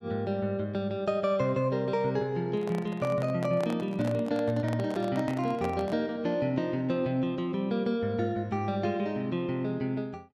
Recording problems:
handling noise; from 2.5 to 6 s; peak -4 dB vs average level

